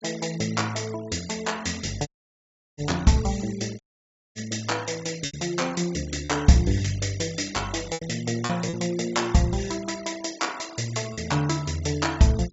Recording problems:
treble cut off; nothing above 8 kHz
denoising artefacts; signal-to-artefact ratio 18 dB
packet loss; 3% of the sound replaced, filled with repeated pitch periods
audio cutting out; at 2 s for 0.5 s and at 4 s for 0.5 s

